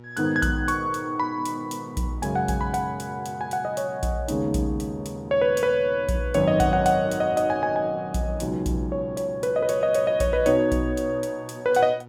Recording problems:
hum; 60 Hz, harmonics up to 1.4 kHz, SNR 22 dB

